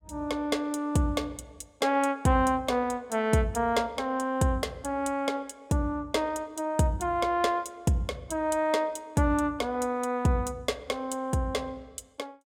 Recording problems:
none

